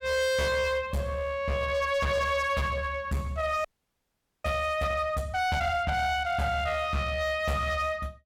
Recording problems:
distortion; hard clipping, uneven, signal-to-distortion ratio 7 dB
audio freezing; at 3.5 s for 1 s

